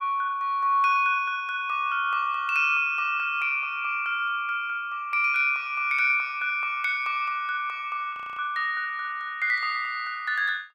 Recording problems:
frozen audio; at 8 s

